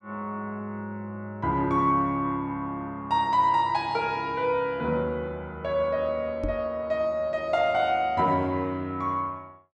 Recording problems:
knock on the microphone; at 6.5 s; peak -2 dB vs average level

